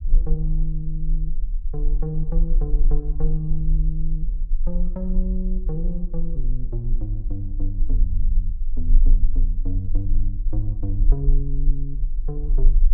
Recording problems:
low-frequency rumble; below 36 Hz, strongest tone 24 Hz, SNR -6 dB

